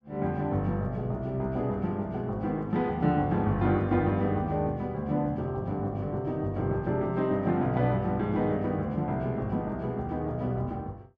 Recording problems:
none

